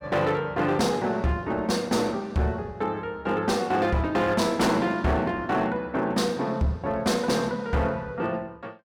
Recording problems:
distorted audio; hard clipping, signal-to-distortion ratio 11 dB

